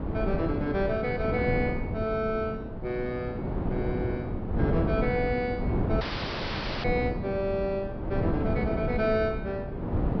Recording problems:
treble cut off; nothing above 5.5 kHz
wind noise; below 350 Hz, SNR 1 dB
dropout; at 6 s for 1 s

